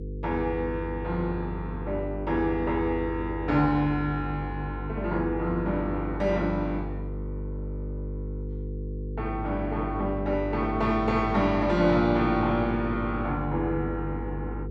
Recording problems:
electrical hum; 50 Hz, harmonics up to 500 Hz, SNR 7 dB

